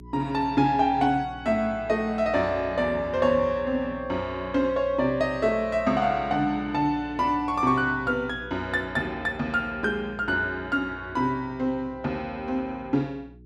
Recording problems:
hum; 60 Hz, harmonics up to 420 Hz, SNR 19 dB

